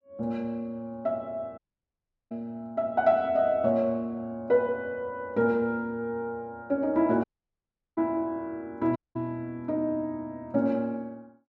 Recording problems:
dropout; at 1.5 s for 0.5 s, at 7 s for 0.5 s and at 9 s

